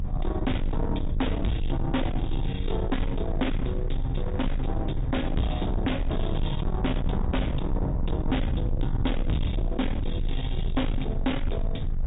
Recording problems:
treble missing; nothing above 3.8 kHz
codec artefacts; Vorbis, log-spectral distance 2 dB
distortion; soft clipping, signal-to-distortion ratio 7 dB
rumble; below 98 Hz, strongest tone 26 Hz, SNR 1 dB
wind on the microphone; below 790 Hz, SNR 17 dB

